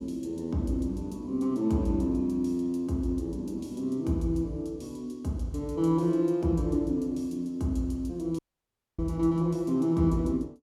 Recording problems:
audio cutting out; at 8.5 s for 0.5 s

